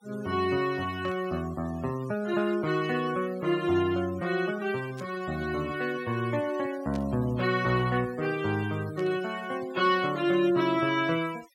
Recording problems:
noise reduction artefacts; signal-to-artefact ratio 20 dB
burst of static; 4 times, first at 1 s; peak -14 dB vs average level

